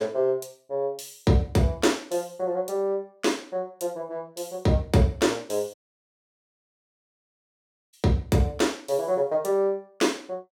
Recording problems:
dropout; at 5.5 s for 2 s

